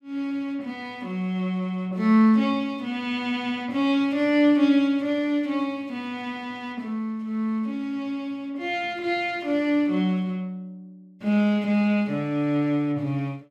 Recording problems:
none

